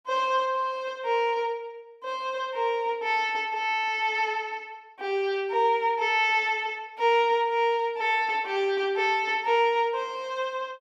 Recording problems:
none

